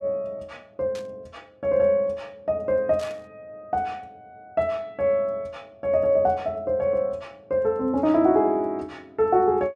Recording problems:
burst of static; at 1 s and at 3 s; peak -14 dB vs average level

